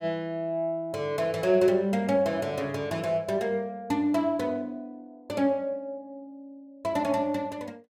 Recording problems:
none

